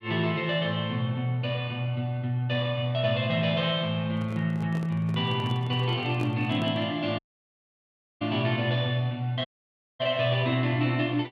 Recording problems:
microphone handling noise; from 4 to 7 s; peak -7 dB vs average level
dropout; at 7 s for 1 s and at 9.5 s for 0.5 s

